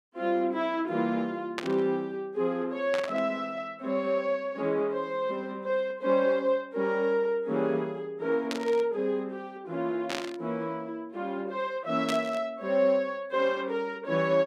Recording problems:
burst of static; 5 times, first at 1.5 s; peak 0 dB vs average level

